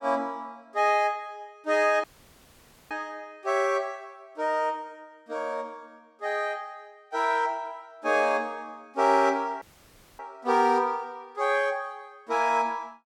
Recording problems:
dropout; at 2 s for 1 s and at 9.5 s for 0.5 s

